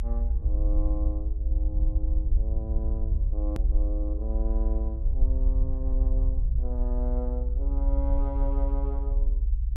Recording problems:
rumble; below 58 Hz, strongest tone 36 Hz, SNR -11 dB
edit click; at 3.5 s

